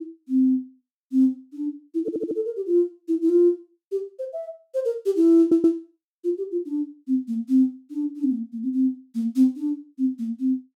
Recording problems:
audio stuttering; at 2 s and at 5.5 s

